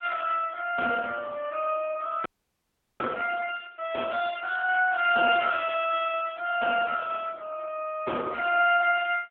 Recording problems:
telephone audio; 340 Hz to 3.3 kHz, AMR-NB
audio freezing; at 2.5 s for 0.5 s

